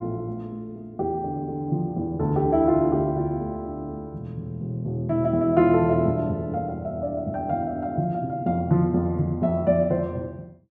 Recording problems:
none

